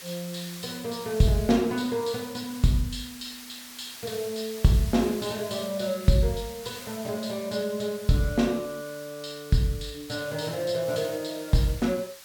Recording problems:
hiss; slope +2 dB per octave, SNR 14 dB

